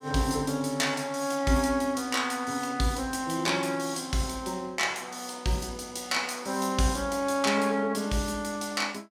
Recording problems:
none

